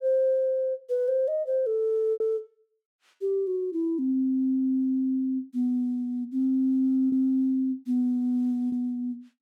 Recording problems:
packet loss; 1.9% of the sound replaced, filled with repeated pitch periods

